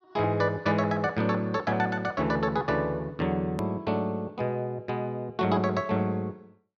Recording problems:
hard cut with a click; at 3.5 s

